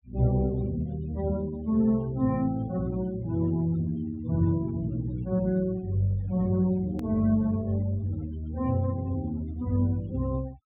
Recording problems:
treble missing; nothing above 4 kHz
denoising artefacts; signal-to-artefact ratio 22 dB
hard cut with a click; at 7 s

